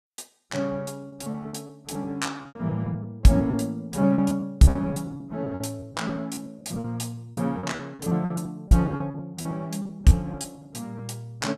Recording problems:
lost packets; 16% of the sound replaced, filled with repeated pitch periods

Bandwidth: 14.5 kHz